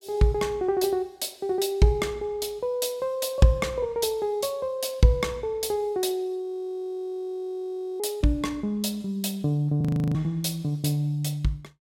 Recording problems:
audio freezing; at 6.5 s for 1.5 s and at 10 s

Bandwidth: 16 kHz